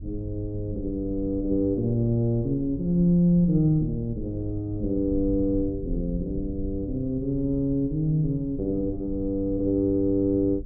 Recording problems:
rumble; below 96 Hz, SNR 13 dB

